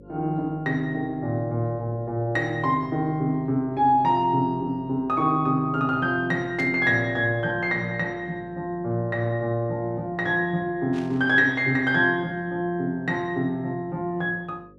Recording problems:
mains hum; 50 Hz, harmonics up to 550 Hz, SNR 24 dB
burst of static; at 6.5 s and at 11 s; peak -13 dB vs average level

